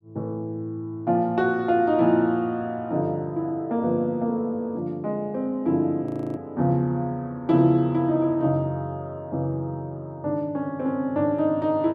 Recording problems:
frozen audio; at 6 s

